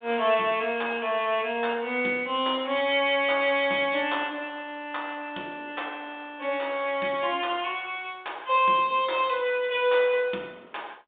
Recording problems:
telephone audio; 220 Hz to 3.7 kHz, G.726

